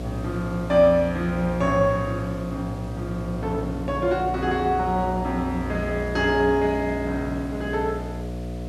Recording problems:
hum; 60 Hz, harmonics up to 720 Hz, SNR 8 dB
background hiss; slope -2 dB per octave, SNR 23 dB

